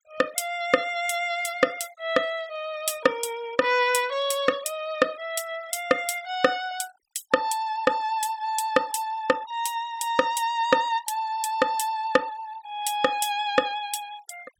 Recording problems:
denoising artefacts; signal-to-artefact ratio 22 dB

